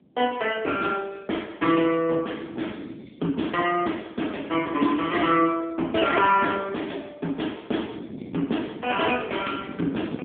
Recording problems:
phone line; 220 Hz to 3.4 kHz, AMR-NB
wind noise; below 350 Hz, SNR 16 dB

